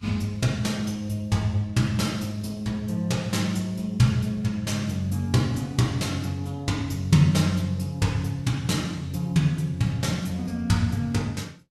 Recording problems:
lossy compression; Vorbis, log-spectral distance 2 dB, nothing above 12.7 kHz

